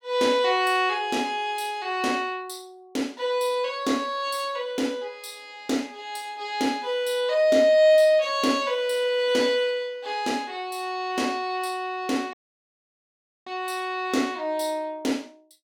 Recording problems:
dropout; at 12 s for 1 s

